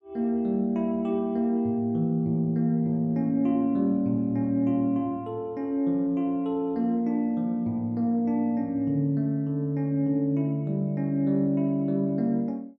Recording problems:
none

